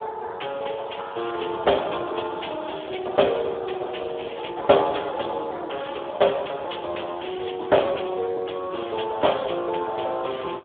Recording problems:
telephone audio; 320 Hz to 3.4 kHz, Speex

